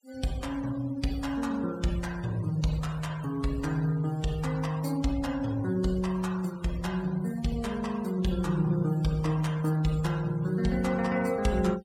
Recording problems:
denoising artefacts; signal-to-artefact ratio 19 dB

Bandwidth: 16 kHz